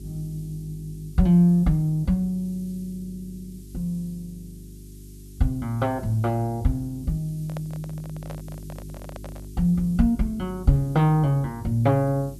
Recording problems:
hum; 50 Hz, harmonics up to 400 Hz, SNR 18 dB
hiss; slope +6 dB per octave, SNR 28 dB
handling noise; from 7.5 to 9.5 s; peak -10 dB vs average level

